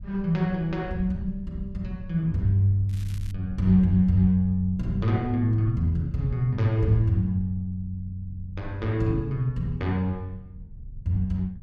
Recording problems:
low-frequency rumble; below 94 Hz, SNR 16 dB
crackling; at 3 s; loose cable, SNR 25 dB

